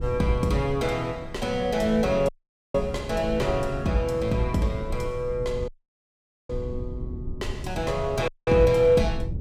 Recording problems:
rumble; below 110 Hz, SNR 12 dB
audio cutting out; at 2.5 s, at 5.5 s for 1 s and at 8.5 s

